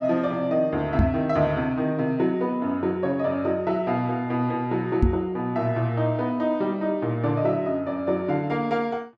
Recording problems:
microphone thump; at 1 s and at 5 s; peak +7 dB vs average level

